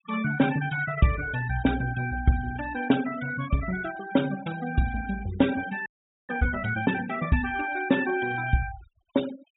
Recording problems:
treble cut off; nothing above 4 kHz
noise reduction artefacts; signal-to-artefact ratio 14 dB
frozen audio; at 6 s

